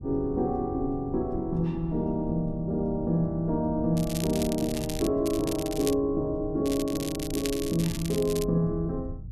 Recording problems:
low-frequency rumble; below 110 Hz, SNR 13 dB
crackle; from 4 to 5 s, at 5.5 s and from 6.5 to 8.5 s; loose cable, SNR 10 dB

